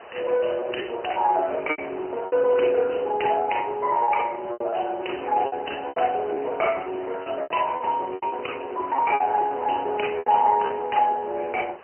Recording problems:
telephone audio; 320 Hz to 3 kHz, AMR-NB
hiss; SNR 18 dB
lost packets; 9% of the sound replaced, filled with repeated pitch periods

